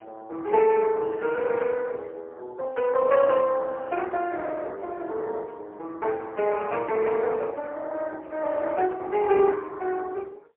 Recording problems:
phone line; 320 Hz to 3.1 kHz, AMR-NB, then MP3

